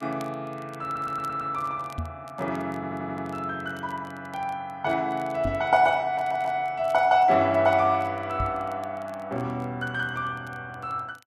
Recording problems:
crackle; vinyl, SNR 29 dB
audio stuttering; at 1 s, at 3 s and at 6 s
knock on the microphone; at 2 s, at 5.5 s and at 8.5 s; peak -1 dB vs average level

